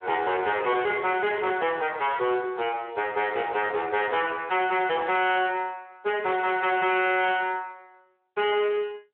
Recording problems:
telephone audio; 320 Hz to 3.3 kHz, Speex
distortion; soft clipping, signal-to-distortion ratio 6 dB

